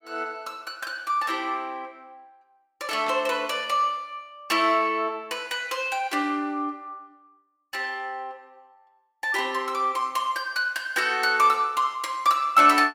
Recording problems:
static burst; at 3 s; peak -10 dB vs average level

